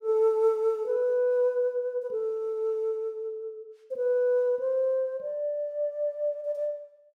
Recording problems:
none

